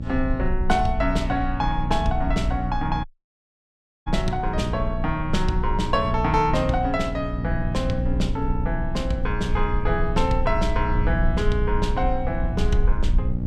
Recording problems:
hum; 60 Hz, harmonics up to 600 Hz, SNR 5 dB
low-frequency rumble; below 52 Hz, strongest tone 20 Hz, SNR 4 dB
dropout; at 3 s for 1 s

